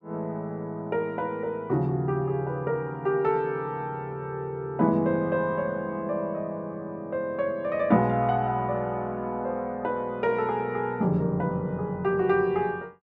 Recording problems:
none

